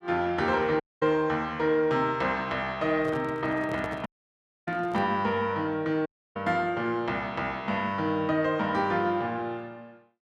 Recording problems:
dropout; at 1 s, at 4 s for 0.5 s and at 6 s
handling noise; from 3 to 5 s; peak -7 dB vs average level

